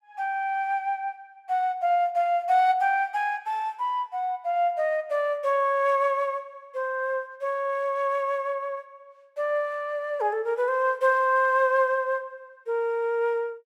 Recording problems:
none

